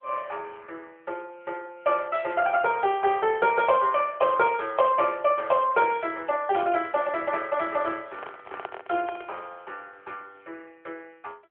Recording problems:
telephone audio; 340 Hz to 3.3 kHz, AMR-NB
handling noise; from 8 to 9.5 s; peak -11 dB vs average level

